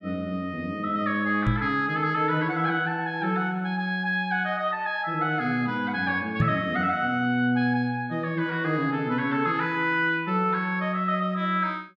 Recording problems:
knock on the microphone; at 1.5 s and at 6.5 s; peak +5 dB vs average level

